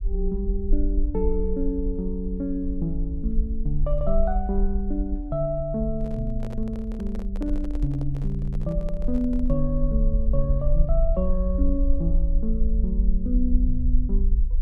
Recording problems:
rumble; below 48 Hz, SNR -1 dB
microphone handling noise; from 6 to 9.5 s; peak -8 dB vs average level

